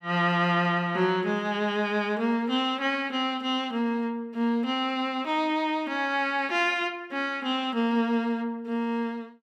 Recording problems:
none

